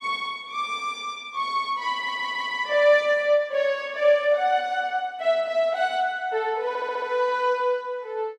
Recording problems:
stutter; at 2 s and at 6.5 s

